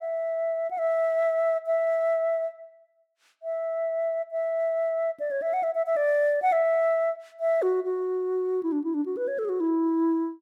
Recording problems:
none

